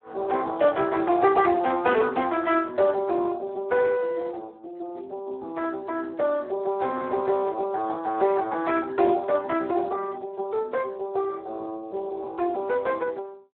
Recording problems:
phone line; 320 Hz to 3.6 kHz, Speex

